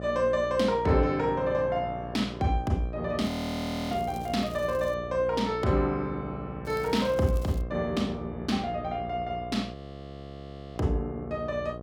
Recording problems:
electrical hum; 60 Hz, harmonics up to 1.3 kHz, SNR 11 dB
crackling; from 3 to 5 s and at 6.5 s; loose cable, SNR 23 dB
frozen audio; at 3.5 s for 0.5 s and at 9.5 s for 1 s

